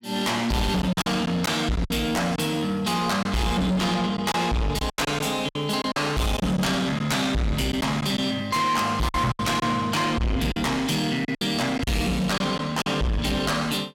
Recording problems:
distorted audio; soft clipping, signal-to-distortion ratio 6 dB
lost packets; 7% of the sound replaced, filled with silence

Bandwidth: 16 kHz